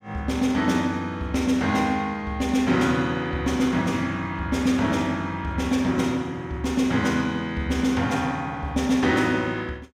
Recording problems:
none

